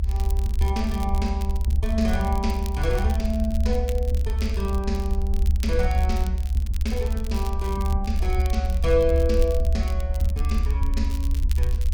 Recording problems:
electrical hum; 50 Hz, harmonics up to 800 Hz, SNR 21 dB
low-frequency rumble; below 70 Hz, SNR -2 dB
crackling; vinyl, SNR 17 dB

